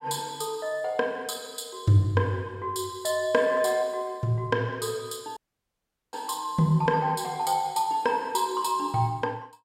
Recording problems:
dropout; at 5.5 s for 1 s

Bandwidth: 16 kHz